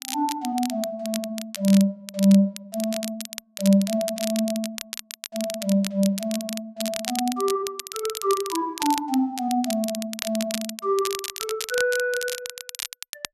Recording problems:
crackle; vinyl, SNR 9 dB

